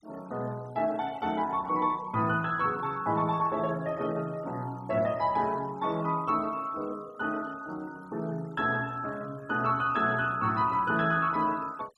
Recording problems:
denoising artefacts; signal-to-artefact ratio 23 dB

